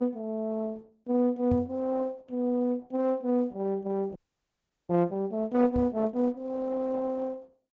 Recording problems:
treble cut off; nothing above 8 kHz
lossy codec; Opus, log-spectral distance 2 dB
microphone thump; at 1.5 s and at 6 s; peak 0 dB vs average level
frozen audio; at 4 s for 0.5 s

